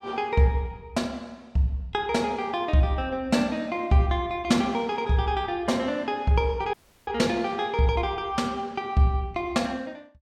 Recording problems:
audio cutting out; at 6.5 s

